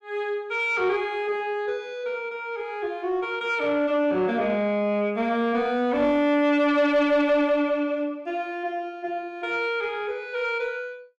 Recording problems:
distortion; soft clipping, signal-to-distortion ratio 10 dB

